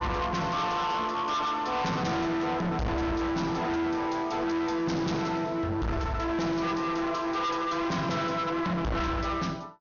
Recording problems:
treble cut off; nothing above 6.6 kHz
distorted audio; hard clipping, signal-to-distortion ratio 6 dB

